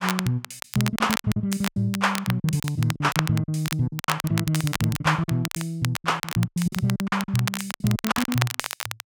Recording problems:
crackle; vinyl, SNR 7 dB
lost packets; 18% of the sound replaced, filled with silence

